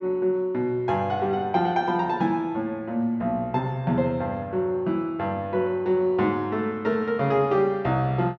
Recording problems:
none

